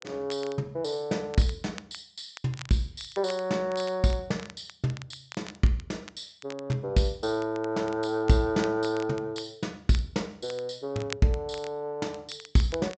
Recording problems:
treble cut off; nothing above 8 kHz
crackle; vinyl, SNR 18 dB

